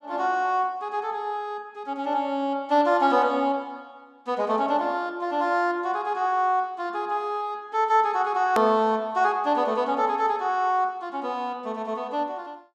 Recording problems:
edit click; at 8.5 s

